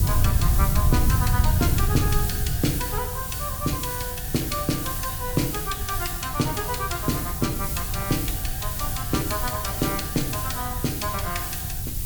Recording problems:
background hiss; slope +2 dB per octave, SNR 1 dB
wind noise; below 110 Hz, SNR 0 dB

